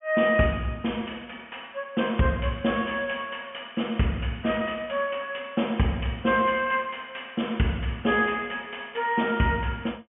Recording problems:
treble missing; nothing above 3.3 kHz

